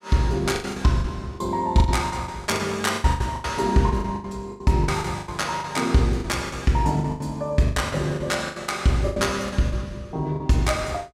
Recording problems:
packet loss; 16% of the sound replaced, filled with the last packet

